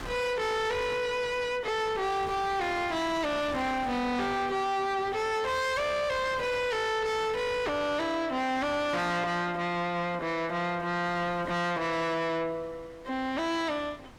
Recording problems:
distorted audio; soft clipping, signal-to-distortion ratio 7 dB
wind on the microphone; below 1.8 kHz, SNR 16 dB

